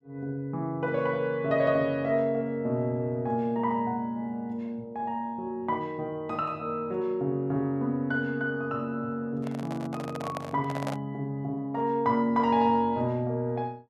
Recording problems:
microphone handling noise; from 9.5 to 11 s; peak -2 dB vs average level

